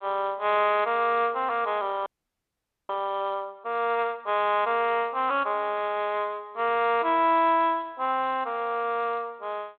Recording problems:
telephone audio; 280 Hz to 3.9 kHz, G.726
frozen audio; at 2 s for 1 s

